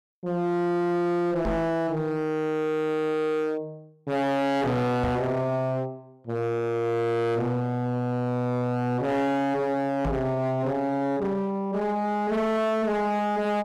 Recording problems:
distorted audio; hard clipping, signal-to-distortion ratio 7 dB
microphone bump; at 1.5 s, at 5 s and at 10 s; peak +1 dB vs average level

